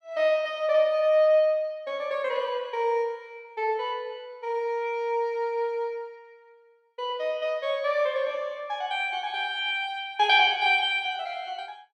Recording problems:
none

